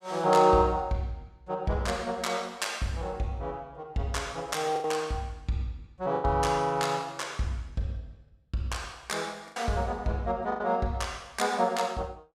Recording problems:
packet loss; 3% of the sound replaced, filled with the last packet

